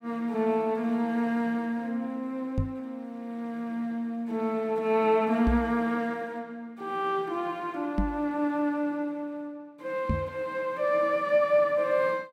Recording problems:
microphone bump; 4 times, first at 2.5 s; peak +6 dB vs average level

